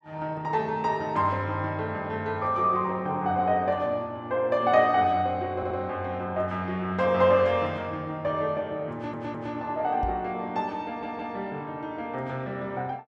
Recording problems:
audio stuttering; at 5.5 s, at 9 s and at 11 s
microphone bump; at 10 s; peak -3 dB vs average level

